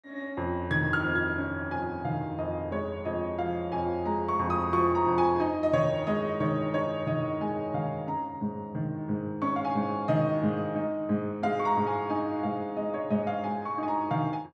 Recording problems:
none

